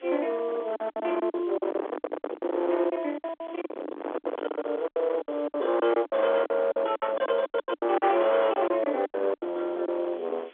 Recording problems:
phone line; 260 Hz to 3.5 kHz, G.711
distortion; hard clipping, uneven, signal-to-distortion ratio 3 dB
hiss; SNR 28 dB
wind noise; below 780 Hz, SNR 12 dB
lost packets; 16% of the sound replaced, filled with silence

